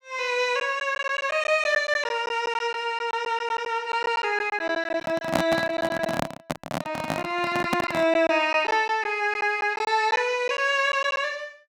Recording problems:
lost packets; 8% of the sound replaced, filled with silence
microphone handling noise; from 5 to 8 s; peak +4 dB vs average level

